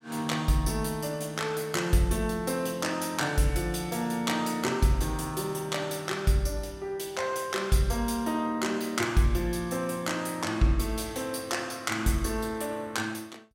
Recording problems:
none

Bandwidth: 16 kHz